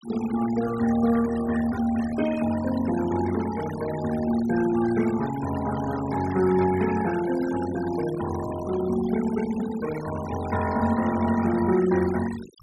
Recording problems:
noise reduction artefacts; signal-to-artefact ratio 14 dB

